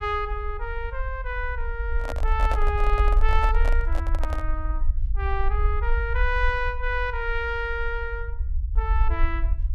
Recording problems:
rumble; below 54 Hz, SNR -1 dB
handling noise; from 2 to 4.5 s; peak 0 dB vs average level

